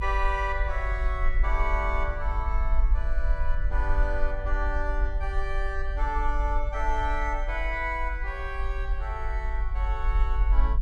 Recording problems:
rumble; below 48 Hz, SNR -2 dB

